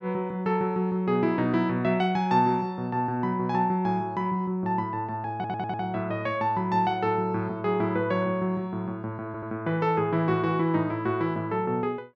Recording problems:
audio stuttering; at 5.5 s and at 9.5 s

